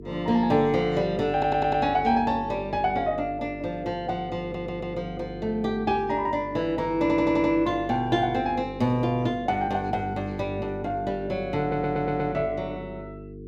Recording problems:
hum; 50 Hz, harmonics up to 450 Hz, SNR 13 dB
audio stuttering; 4 times, first at 1.5 s

